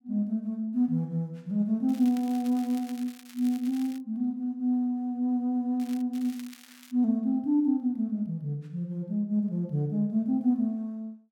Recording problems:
crackling; from 2 to 4 s and at 6 s; loose cable, SNR 21 dB

